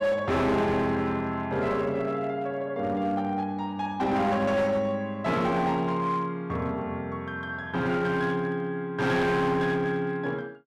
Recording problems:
distortion; hard clipping, uneven, signal-to-distortion ratio 11 dB

